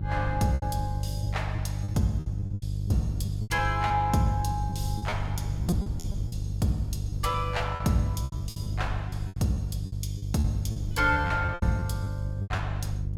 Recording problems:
electrical hum; 50 Hz, harmonics up to 350 Hz, SNR 2 dB
wind noise; below 120 Hz, SNR 11 dB
packet loss; 12% of the sound replaced, filled with repeated pitch periods

